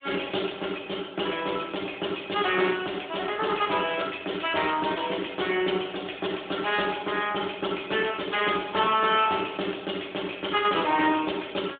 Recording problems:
telephone audio; 220 Hz to 3.6 kHz, AMR-NB

